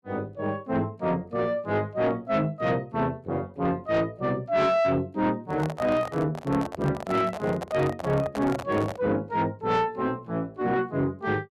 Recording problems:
distortion; soft clipping, signal-to-distortion ratio 11 dB
handling noise; from 5.5 to 9 s; peak -3 dB vs average level

